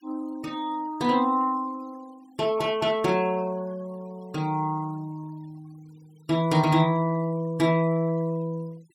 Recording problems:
denoising artefacts; signal-to-artefact ratio 27 dB

